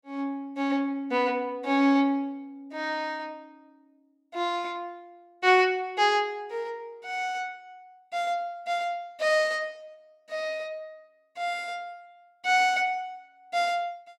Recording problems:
none

